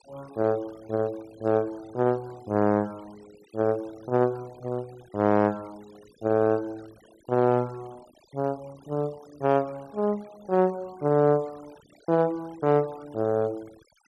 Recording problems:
noise reduction artefacts; signal-to-artefact ratio 26 dB

